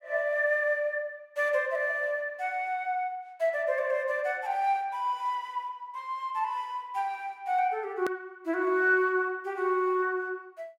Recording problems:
edit click; at 8 s

